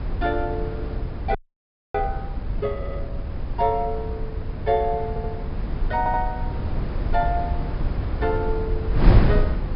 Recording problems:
treble missing; nothing above 5.5 kHz
electrical hum; 60 Hz, harmonics up to 1.2 kHz, SNR 22 dB
wind noise; below 120 Hz, SNR 0 dB
audio freezing; at 1.5 s for 0.5 s
stutter; at 3 s, at 5 s and at 6 s

